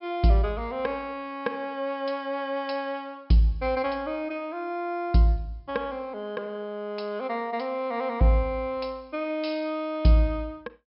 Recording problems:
low-pass filter; nothing above 5.3 kHz

